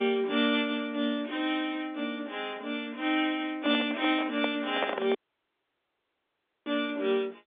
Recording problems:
telephone audio; 260 Hz to 3.6 kHz, G.711
handling noise; from 3.5 to 5 s; peak +4 dB vs average level
crackle; from 3.5 to 7 s; loose cable, SNR 27 dB
dropout; at 5 s for 1.5 s

